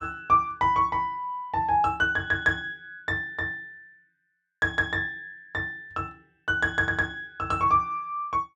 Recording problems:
none

